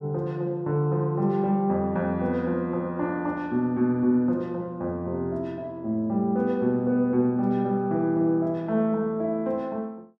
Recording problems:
none

